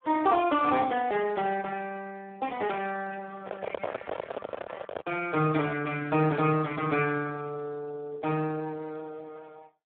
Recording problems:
telephone audio; 170 Hz to 3.4 kHz, Speex
microphone handling noise; from 3.5 to 5 s; peak +1 dB vs average level

